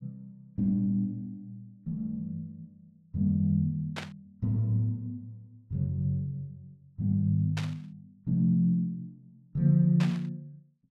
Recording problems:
burst of static; at 4 s, at 7.5 s and at 10 s; peak -4 dB vs average level

